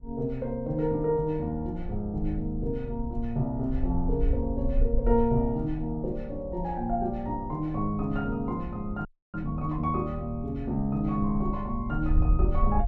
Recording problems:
wind noise; below 56 Hz, SNR 6 dB
audio freezing; at 9 s

